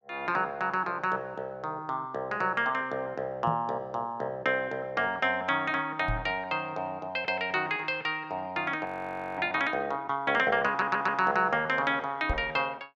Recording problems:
knock on the microphone; at 3.5 s, at 6 s and at 12 s; peak +1 dB vs average level
frozen audio; at 9 s for 0.5 s
audio stuttering; at 11 s

